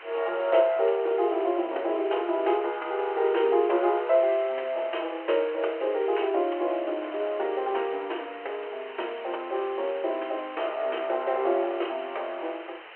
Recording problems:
phone line; 300 Hz to 3.2 kHz, G.726
background hiss; SNR 16 dB

